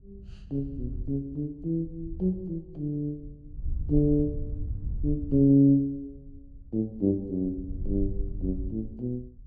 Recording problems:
wind noise; below 78 Hz, SNR 10 dB

